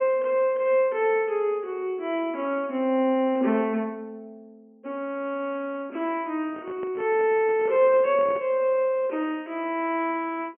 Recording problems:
low-pass filter; nothing above 3.1 kHz
microphone handling noise; from 6.5 to 8.5 s; peak -9 dB vs average level

